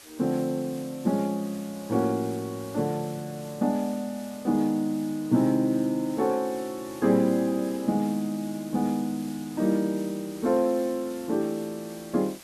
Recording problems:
hiss; slope -1 dB per octave, SNR 19 dB

